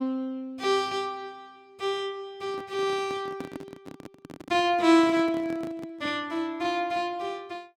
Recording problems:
microphone handling noise; from 2.5 to 6 s; peak -6 dB vs average level

